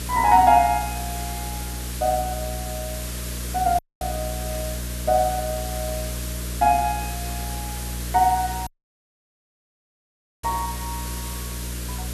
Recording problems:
electrical hum; 60 Hz, harmonics up to 660 Hz, SNR 10 dB
background hiss; SNR 11 dB
dropout; at 4 s and at 8.5 s for 2 s

